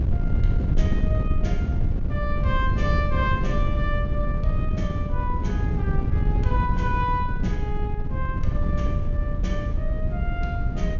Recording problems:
treble missing; nothing above 7.1 kHz
rumble; below 94 Hz, SNR 6 dB
wind noise; below 110 Hz, SNR -5 dB

